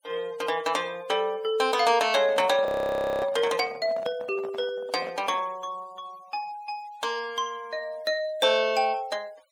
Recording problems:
noise reduction artefacts; signal-to-artefact ratio 25 dB
microphone handling noise; from 2 to 5.5 s; peak -6 dB vs average level
audio freezing; at 2.5 s for 0.5 s

